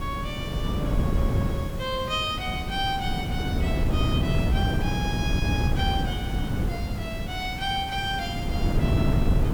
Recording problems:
background hiss; slope -3 dB per octave, SNR 14 dB
wind noise; below 210 Hz, SNR -4 dB

